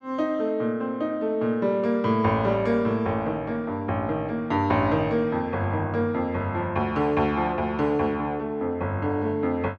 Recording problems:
none

